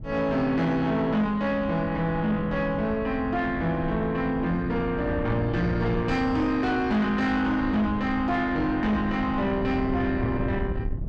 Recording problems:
distorted audio; soft clipping, signal-to-distortion ratio 11 dB
wind noise; below 180 Hz, SNR 10 dB

